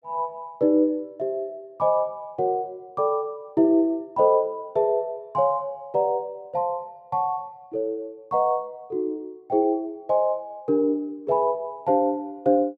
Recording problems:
none

